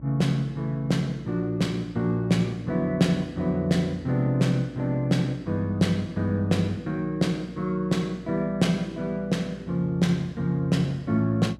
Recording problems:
hum; 60 Hz, harmonics up to 660 Hz, SNR 22 dB

